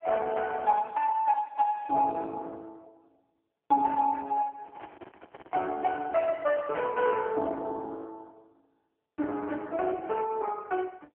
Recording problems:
phone line; 280 Hz to 2.2 kHz, AMR-NB
handling noise; from 4.5 to 7 s; peak -11 dB vs average level

